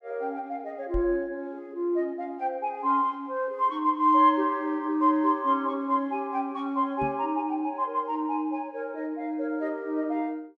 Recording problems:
microphone bump; at 1 s and at 7 s; peak -2 dB vs average level

